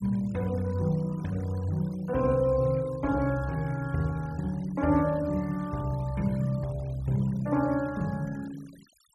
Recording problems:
noise reduction artefacts; signal-to-artefact ratio 24 dB

